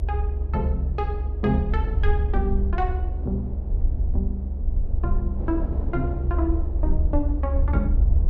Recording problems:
low-frequency rumble; below 70 Hz, SNR -4 dB
wind noise; below 330 Hz, SNR 9 dB

